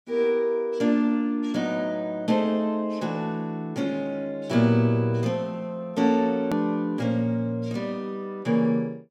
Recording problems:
click at an edit; at 6.5 s

